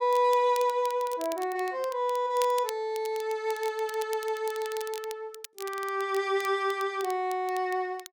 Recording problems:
crackle; vinyl, SNR 17 dB

